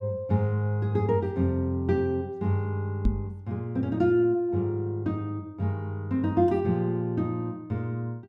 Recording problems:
microphone bump; at 3 s; peak +5 dB vs average level

